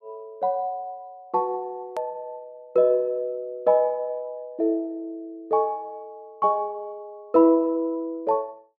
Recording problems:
click at an edit; at 2 s

